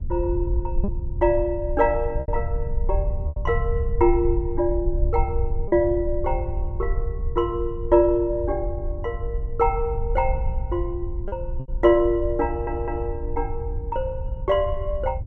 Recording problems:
low-frequency rumble; below 72 Hz, SNR 5 dB
packet loss; 2% of the sound replaced, filled with repeated pitch periods
stutter; at 12 s

